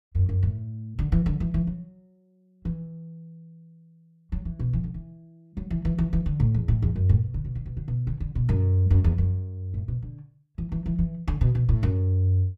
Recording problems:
none

